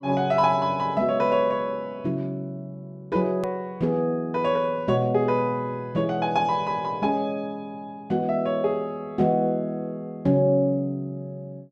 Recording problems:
edit click; at 3.5 s

